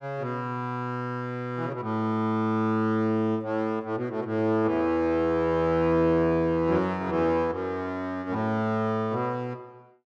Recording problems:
none

